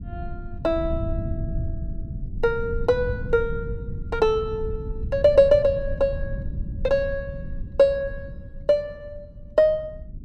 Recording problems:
rumble; below 110 Hz, SNR 10 dB

